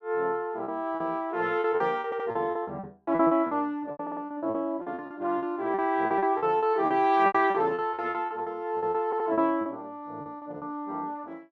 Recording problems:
packet loss; 16% of the sound replaced, filled with repeated pitch periods
stutter; at 2 s, at 4 s and at 9 s

